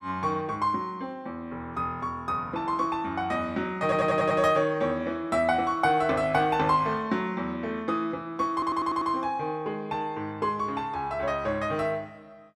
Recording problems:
stutter; at 4 s and at 8.5 s

